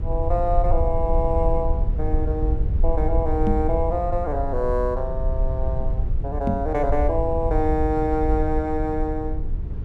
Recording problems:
hum; 60 Hz, harmonics up to 480 Hz, SNR 13 dB
rumble; below 68 Hz, SNR 2 dB
microphone thump; at 3.5 s and at 6.5 s; peak +5 dB vs average level

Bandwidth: 12.5 kHz